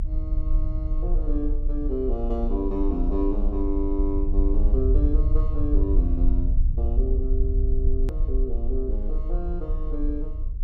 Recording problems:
low-frequency rumble; below 52 Hz, strongest tone 26 Hz, SNR -5 dB
edit click; at 8 s

